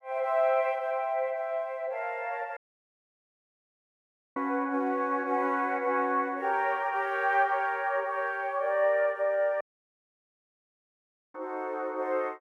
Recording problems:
audio cutting out; at 2.5 s for 2 s and at 9.5 s for 1.5 s

